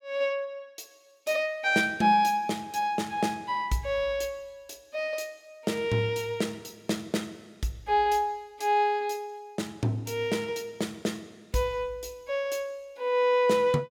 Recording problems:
none

